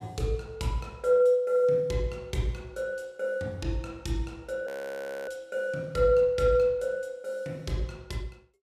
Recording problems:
frozen audio; at 4.5 s for 0.5 s

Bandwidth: 15 kHz